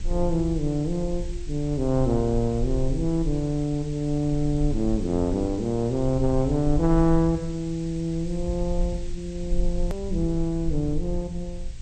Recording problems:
lossy compression; MP2, log-spectral distance 2 dB, nothing above 13.1 kHz
hiss; slope +1 dB per octave, SNR 22 dB
rumble; below 52 Hz, strongest tone 20 Hz, SNR 8 dB
hard cut with a click; at 10 s

